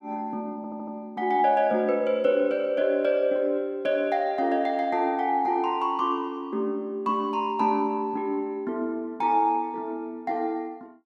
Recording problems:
audio stuttering; at 0.5 s

